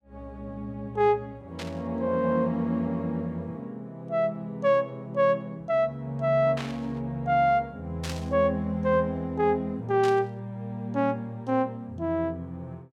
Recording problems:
static burst; 4 times, first at 1.5 s; peak -5 dB vs average level

